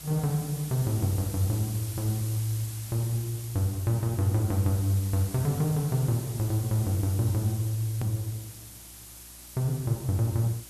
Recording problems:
hum; 60 Hz, harmonics up to 360 Hz, SNR 27 dB
background hiss; slope 0 dB per octave, SNR 13 dB
click at an edit; at 8 s

